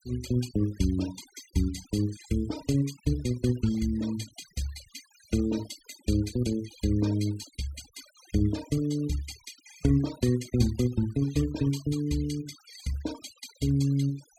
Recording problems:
noise reduction artefacts; signal-to-artefact ratio 18 dB

